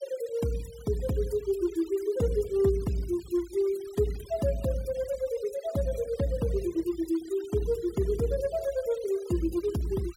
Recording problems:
noise reduction artefacts; signal-to-artefact ratio 20 dB

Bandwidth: 16.5 kHz